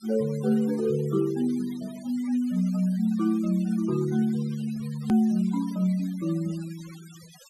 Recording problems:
noise reduction artefacts; signal-to-artefact ratio 22 dB
click at an edit; at 5 s

